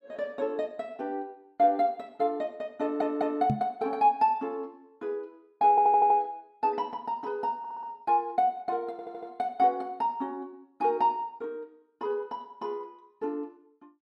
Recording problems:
stutter; 4 times, first at 3 s
microphone bump; at 3.5 s; peak +4 dB vs average level

